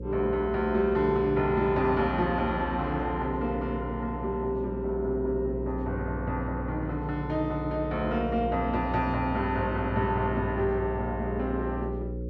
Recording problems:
electrical hum; 60 Hz, harmonics up to 540 Hz, SNR 7 dB

